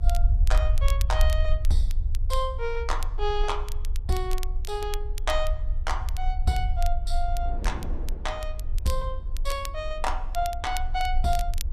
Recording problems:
low-frequency rumble; below 52 Hz, strongest tone 22 Hz, SNR -1 dB
wind noise; below 430 Hz, SNR 18 dB
crackling; vinyl, SNR 13 dB

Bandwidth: 14.5 kHz